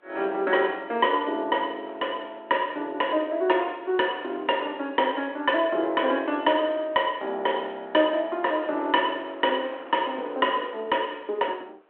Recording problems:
phone line; 280 Hz to 3.3 kHz, G.726
wind noise; below 1.4 kHz, SNR 23 dB

